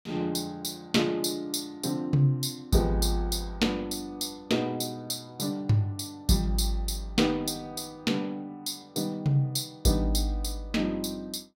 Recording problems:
none

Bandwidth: 16.5 kHz